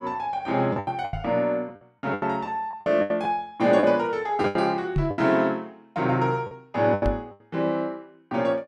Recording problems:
packet loss; 11% of the sound replaced, filled with the last packet
microphone bump; at 1 s, at 5 s and at 7 s; peak +3 dB vs average level

